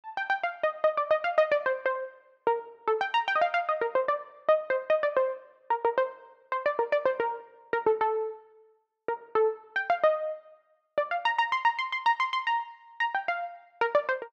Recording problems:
none

